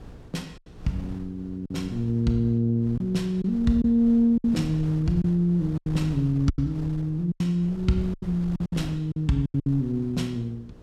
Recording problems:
hum; 60 Hz, harmonics up to 480 Hz, SNR 26 dB
wind on the microphone; below 180 Hz, SNR 18 dB
lost packets; 8% of the sound replaced, filled with silence

